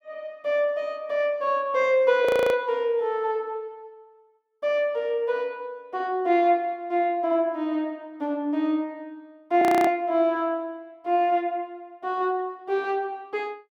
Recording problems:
frozen audio; at 2.5 s and at 9.5 s

